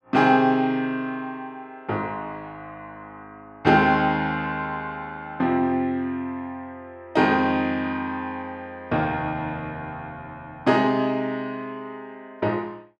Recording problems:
none

